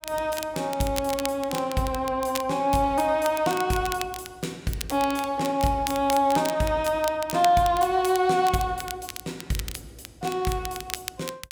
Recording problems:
crackle; vinyl, SNR 12 dB

